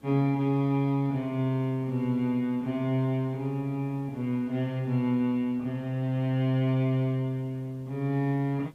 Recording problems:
background hiss; SNR 29 dB

